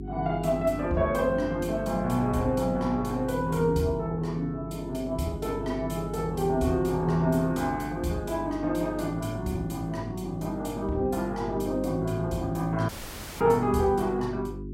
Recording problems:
hum; 50 Hz, harmonics up to 400 Hz, SNR 11 dB
dropout; at 13 s for 0.5 s

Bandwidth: 16 kHz